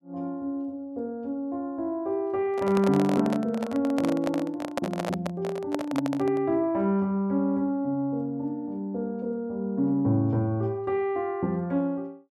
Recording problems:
handling noise; from 2.5 to 6.5 s; peak +2 dB vs average level

